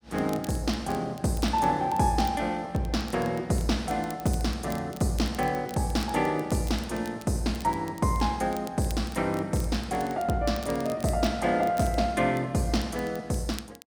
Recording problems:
crackling; vinyl, SNR 20 dB

